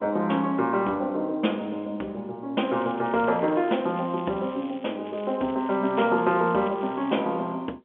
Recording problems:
telephone audio; 220 Hz to 3.5 kHz, G.711
crackling; from 2.5 to 5 s and from 5 to 7 s; loose cable, SNR 23 dB

